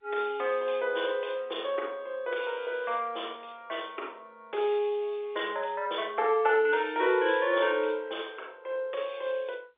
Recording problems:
telephone audio; 320 Hz to 3.6 kHz, G.711

